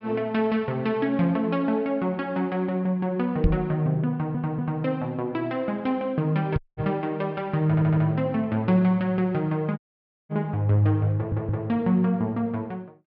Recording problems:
low-pass filter; nothing above 5.5 kHz
microphone thump; at 3.5 s and at 6.5 s; peak +6 dB vs average level
audio stuttering; at 4 s, at 7.5 s and at 11 s
dropout; at 6.5 s and at 10 s for 0.5 s

